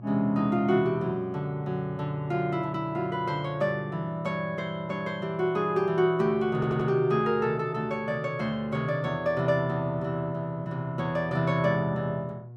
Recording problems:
mains hum; 60 Hz, harmonics up to 720 Hz, SNR 19 dB
audio stuttering; at 6.5 s

